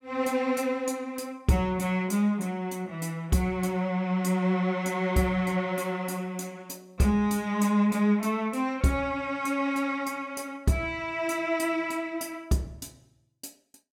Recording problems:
none

